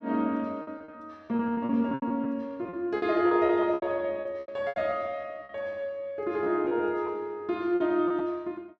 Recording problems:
packet loss; 13% of the sound replaced, filled with repeated pitch periods

